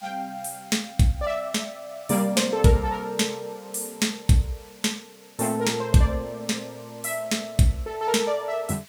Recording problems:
background hiss; slope +2 dB per octave, SNR 24 dB

